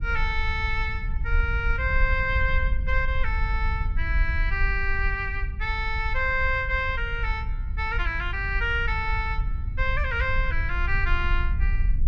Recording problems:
wind noise; below 60 Hz, SNR 2 dB

